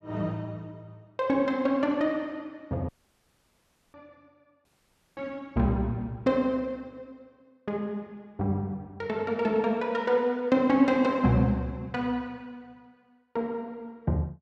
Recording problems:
audio cutting out; at 3 s for 1 s and at 4.5 s for 0.5 s

